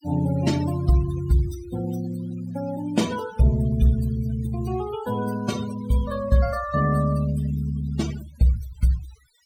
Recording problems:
noise reduction artefacts; signal-to-artefact ratio 17 dB

